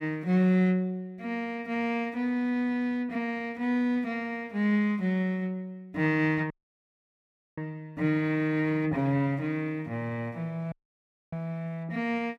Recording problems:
audio cutting out; at 6.5 s for 1 s and at 11 s for 0.5 s

